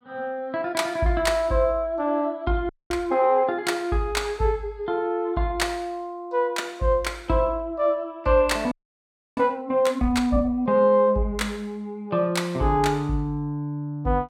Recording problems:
frozen audio; at 2.5 s and at 8.5 s for 0.5 s

